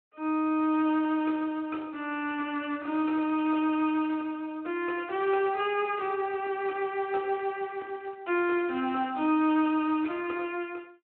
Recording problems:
phone line; 220 Hz to 3.1 kHz, Speex
crackling; from 2 to 4 s, from 7 to 8 s and at 9.5 s; loose cable, SNR 29 dB

